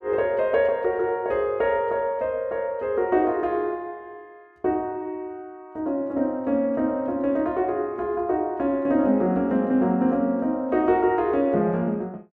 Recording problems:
none

